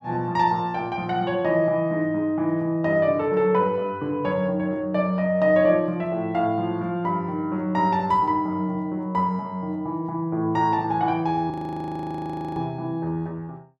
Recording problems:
audio freezing; at 12 s for 1 s

